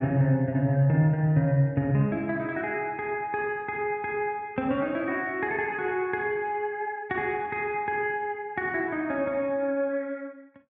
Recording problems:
none

